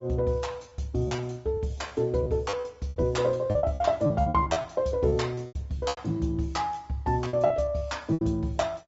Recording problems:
treble cut off; nothing above 7.6 kHz
codec artefacts; Opus, log-spectral distance 2 dB
lost packets; 13% of the sound replaced, filled with repeated pitch periods

